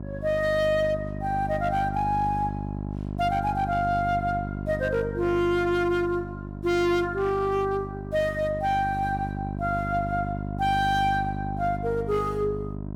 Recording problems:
distorted audio; hard clipping, uneven, signal-to-distortion ratio 12 dB
electrical hum; 50 Hz, harmonics up to 1.1 kHz, SNR 7 dB

